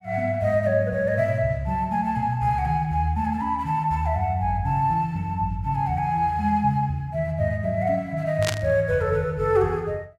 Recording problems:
static burst; at 8.5 s; peak +2 dB vs average level

